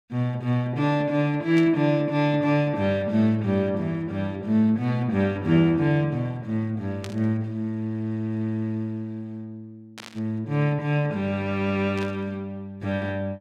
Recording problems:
static burst; 4 times, first at 1.5 s; peak -9 dB vs average level

